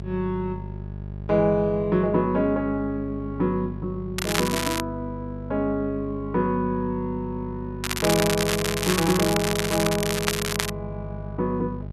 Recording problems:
electrical hum; 50 Hz, harmonics up to 800 Hz, SNR 10 dB
crackle; at 4 s and from 8 to 11 s; loose cable, SNR 2 dB

